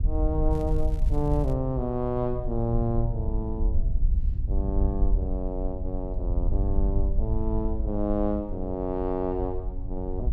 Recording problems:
rumble; below 56 Hz, strongest tone 20 Hz, SNR 7 dB
wind noise; below 64 Hz, SNR 0 dB
crackling; from 0.5 to 1.5 s; loose cable, SNR 26 dB

